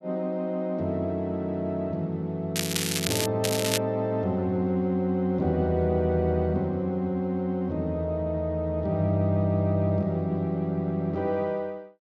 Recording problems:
crackling; at 2.5 s and at 3.5 s; loose cable, SNR 2 dB

